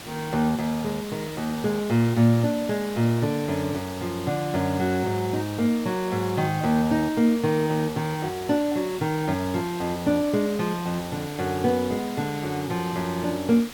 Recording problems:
background hiss; slope -2 dB per octave, SNR 14 dB

